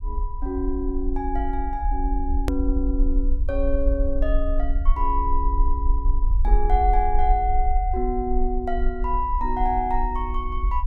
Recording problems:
low-frequency rumble; below 48 Hz, SNR 0 dB
edit click; at 2.5 s

